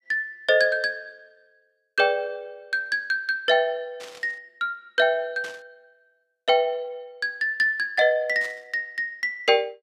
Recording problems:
burst of static; at 4 s, at 5.5 s and at 8.5 s; peak -12 dB vs average level

